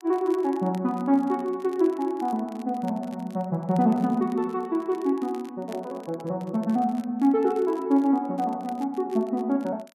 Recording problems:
crackle; vinyl, SNR 28 dB

